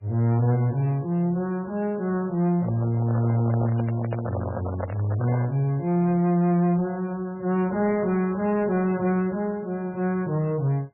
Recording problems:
lossy codec; MP3, log-spectral distance 2 dB, nothing above 2.7 kHz
distortion; soft clipping, signal-to-distortion ratio 11 dB
handling noise; from 2.5 to 5.5 s; peak -3 dB vs average level

